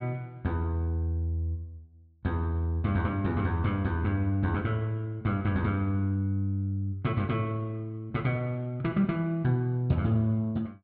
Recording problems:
treble missing; nothing above 5.5 kHz

